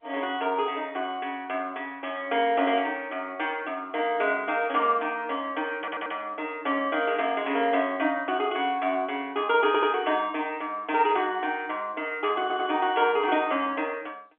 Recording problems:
telephone audio; 240 Hz to 3.5 kHz, G.711
audio stuttering; at 6 s, at 9.5 s and at 12 s

